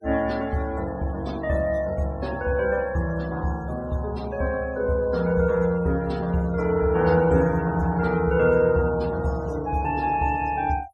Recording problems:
noise reduction artefacts; signal-to-artefact ratio 22 dB

